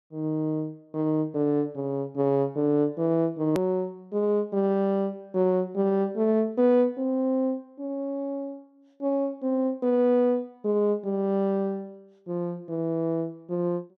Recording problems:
hard cut with a click; at 3.5 s

